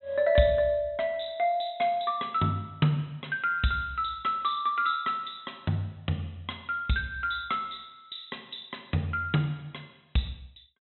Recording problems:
low-pass filter; nothing above 3.9 kHz

